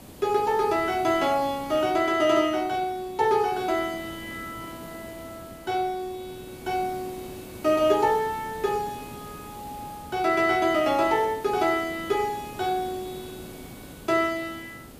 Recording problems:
hiss; SNR 17 dB

